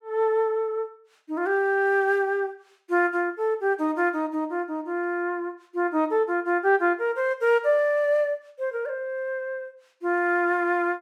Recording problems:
none

